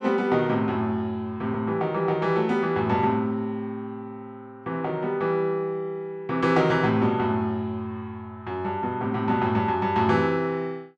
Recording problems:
none

